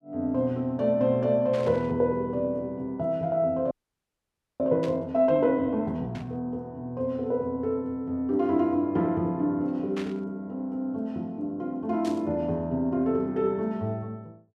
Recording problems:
static burst; 5 times, first at 1.5 s; peak -9 dB vs average level
frozen audio; at 3.5 s for 1 s

